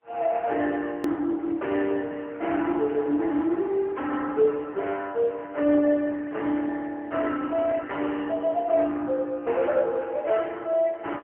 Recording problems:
phone line; 240 Hz to 3.3 kHz, AMR-NB, then MP3
click at an edit; at 1 s

